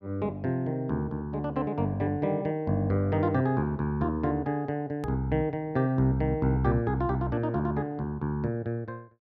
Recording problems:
edit click; at 5 s

